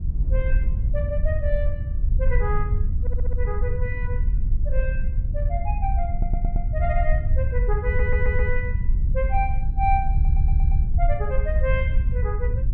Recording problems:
rumble; below 68 Hz, SNR -5 dB
wind noise; below 60 Hz, SNR 3 dB
stutter; 4 times, first at 3 s

